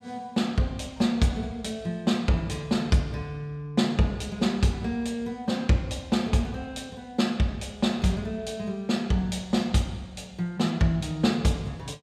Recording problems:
none

